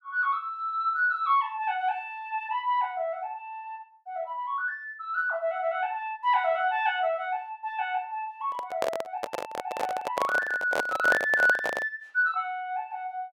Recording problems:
handling noise; from 8.5 to 12 s; peak +4 dB vs average level

